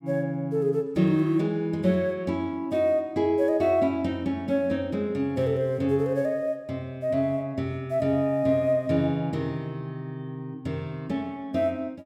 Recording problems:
none

